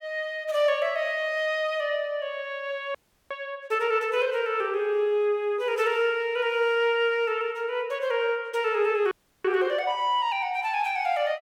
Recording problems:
frozen audio; at 3 s and at 9 s

